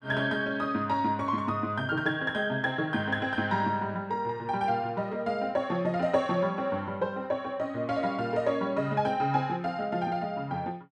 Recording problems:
none

